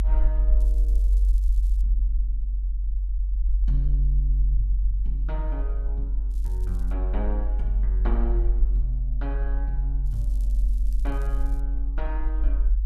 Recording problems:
low-frequency rumble; below 48 Hz, strongest tone 46 Hz, SNR -12 dB
crackling; from 0.5 to 2 s, at 6.5 s and from 10 to 12 s; loose cable, SNR 19 dB

